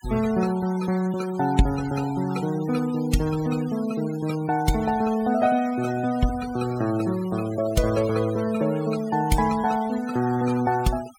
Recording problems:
noise reduction artefacts; signal-to-artefact ratio 17 dB

